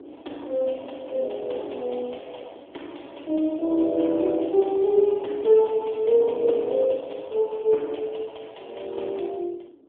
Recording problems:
telephone audio; 260 Hz to 3.5 kHz, AMR-NB
wind on the microphone; below 420 Hz, SNR 22 dB

